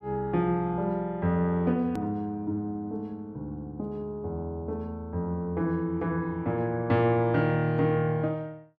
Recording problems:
click at an edit; at 2 s

